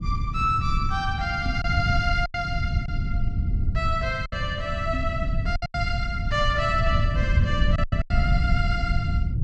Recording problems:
rumble; below 110 Hz, SNR 0 dB
lost packets; 6% of the sound replaced, filled with silence
microphone bump; at 1.5 s and at 5 s; peak -2 dB vs average level

